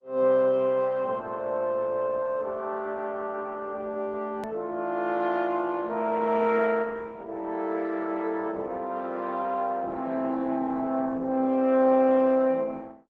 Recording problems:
lossy compression; Opus, log-spectral distance 3 dB
hard cut with a click; at 4.5 s

